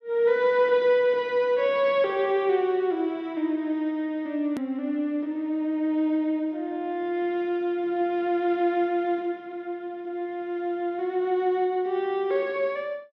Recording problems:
click at an edit; at 4.5 s

